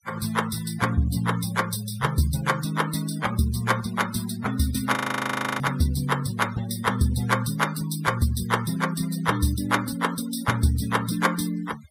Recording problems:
denoising artefacts; signal-to-artefact ratio 16 dB
audio freezing; at 5 s for 0.5 s

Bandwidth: 15.5 kHz